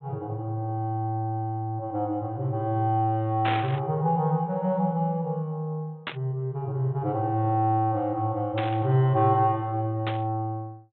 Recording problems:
treble cut off; nothing above 3.8 kHz
burst of static; 4 times, first at 3.5 s; peak 0 dB vs average level

